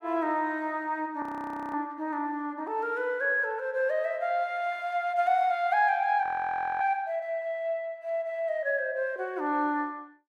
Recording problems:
audio freezing; at 1 s for 0.5 s and at 6 s for 0.5 s

